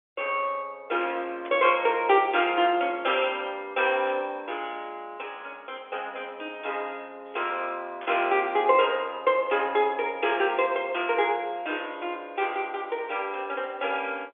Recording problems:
phone line; 300 Hz to 3.5 kHz, G.711
burst of static; 4 times, first at 1.5 s; peak -12 dB vs average level

